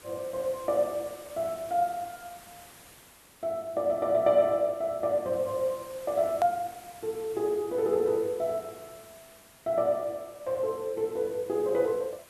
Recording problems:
background hiss; slope -3 dB per octave, SNR 21 dB
hard cut with a click; at 6.5 s

